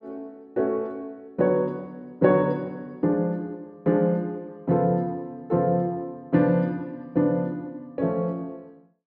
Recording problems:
none

